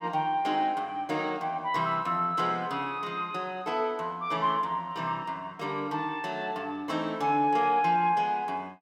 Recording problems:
none

